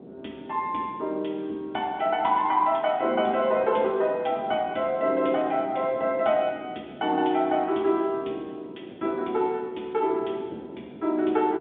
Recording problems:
phone line; 240 Hz to 3.8 kHz, G.711
wind noise; below 430 Hz, SNR 18 dB

